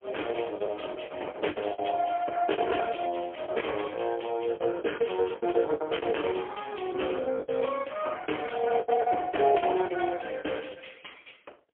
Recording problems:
phone line; 280 Hz to 3.3 kHz, AMR-NB, then MP3
lost packets; 12% of the sound replaced, filled with the last packet

